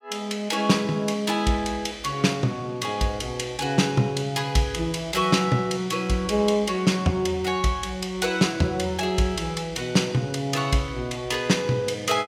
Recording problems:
none

